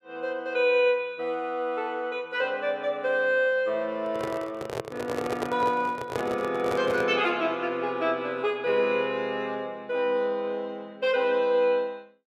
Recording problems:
microphone handling noise; from 4 to 7 s; peak 0 dB vs average level

